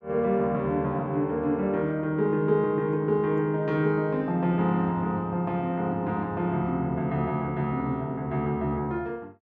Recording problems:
none

